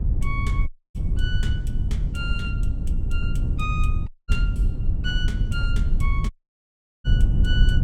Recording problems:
rumble; below 86 Hz, SNR -9 dB
wind noise; below 200 Hz, SNR 8 dB
dropout; at 0.5 s, at 4 s and at 6.5 s for 0.5 s

